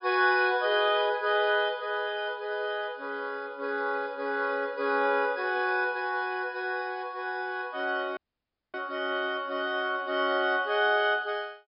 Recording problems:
treble missing; nothing above 5.5 kHz
audio cutting out; at 8 s for 0.5 s

